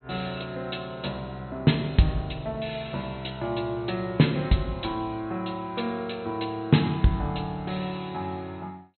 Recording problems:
treble cut off; nothing above 4.2 kHz

